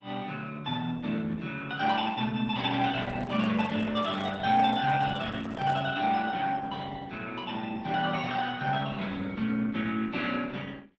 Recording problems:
lossy compression; Opus, log-spectral distance 4 dB
microphone handling noise; from 3 to 6 s; peak -8 dB vs average level

